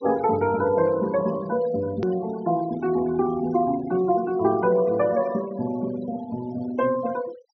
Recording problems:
treble cut off; nothing above 6 kHz
noise reduction artefacts; signal-to-artefact ratio 18 dB
click at an edit; at 2 s

